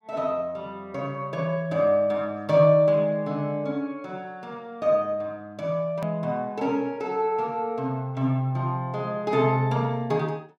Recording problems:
click at an edit; at 6 s

